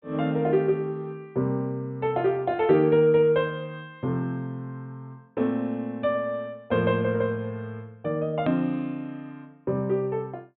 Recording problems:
low-pass filter; nothing above 4 kHz
hard cut with a click; at 8.5 s

